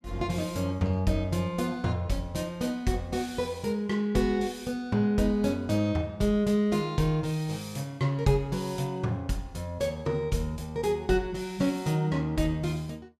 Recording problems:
none

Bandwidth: 14.5 kHz